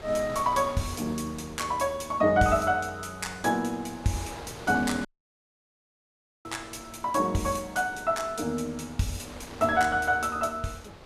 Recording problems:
wind on the microphone; below 1.9 kHz, SNR 17 dB
audio cutting out; at 5 s for 1.5 s

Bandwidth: 14.5 kHz